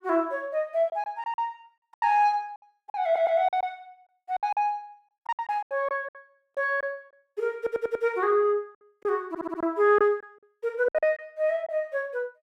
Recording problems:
lost packets; 11% of the sound replaced, filled with silence
audio stuttering; at 3 s, at 7.5 s and at 9.5 s

